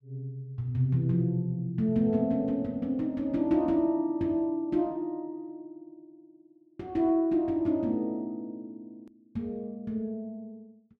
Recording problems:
hard cut with a click; at 9 s

